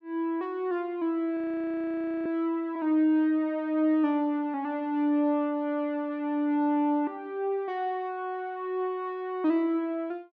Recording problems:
audio freezing; at 1.5 s for 1 s

